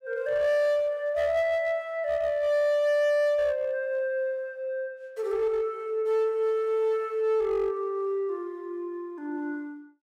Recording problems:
distortion; hard clipping, uneven, signal-to-distortion ratio 11 dB

